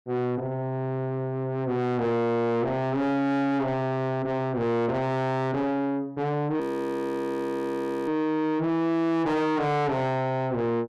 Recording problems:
distortion; soft clipping, signal-to-distortion ratio 6 dB
audio freezing; at 6.5 s for 1.5 s

